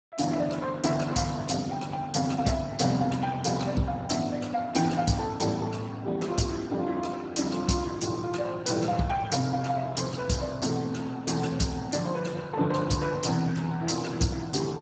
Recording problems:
lossy compression; Speex, log-spectral distance 6 dB, nothing above 7.6 kHz

